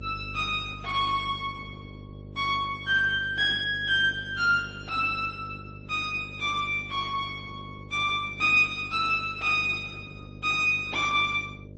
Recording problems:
codec artefacts; Opus, then MP3, log-spectral distance 3 dB, nothing above 8 kHz
electrical hum; 50 Hz, harmonics up to 600 Hz, SNR 16 dB

